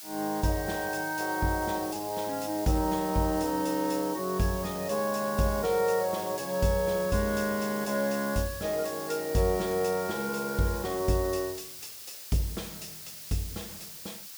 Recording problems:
hiss; slope +3 dB per octave, SNR 11 dB

